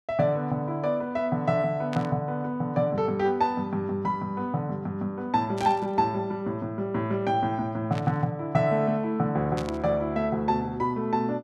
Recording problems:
burst of static; 4 times, first at 2 s; peak -7 dB vs average level

